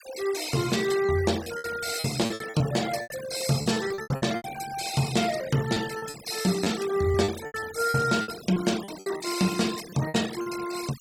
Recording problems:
noise reduction artefacts; signal-to-artefact ratio 12 dB
lost packets; 13% of the sound replaced, filled with repeated pitch periods

